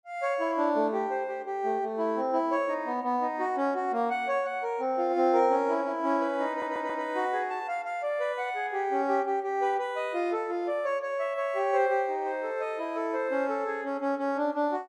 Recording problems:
stutter; at 6.5 s

